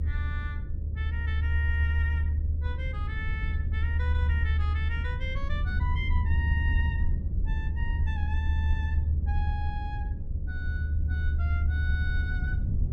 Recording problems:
hum; 60 Hz, harmonics up to 600 Hz, SNR 15 dB
low-frequency rumble; below 78 Hz, strongest tone 76 Hz, SNR -10 dB

